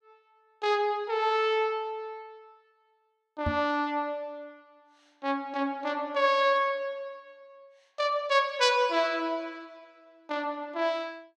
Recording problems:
microphone bump; at 3.5 s; peak 0 dB vs average level

